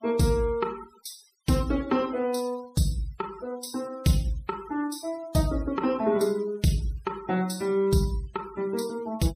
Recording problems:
denoising artefacts; signal-to-artefact ratio 20 dB

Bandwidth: 15 kHz